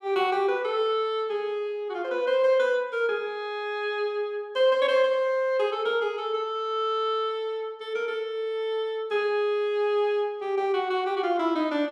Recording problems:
none

